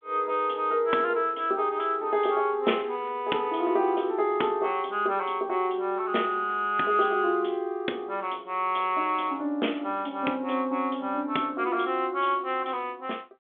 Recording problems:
telephone audio; 220 Hz to 3.5 kHz, G.726

